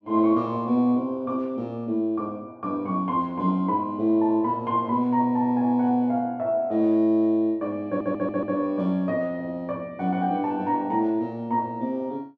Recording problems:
stutter; at 8 s

